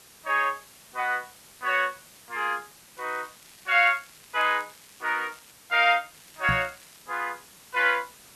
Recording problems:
hiss; slope -1 dB per octave, SNR 23 dB
crackle; from 3 to 5.5 s and at 6 s; loose cable, SNR 27 dB
microphone bump; at 6.5 s; peak -1 dB vs average level

